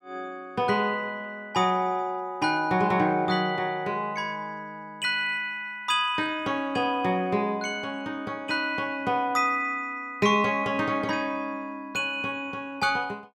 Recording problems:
none

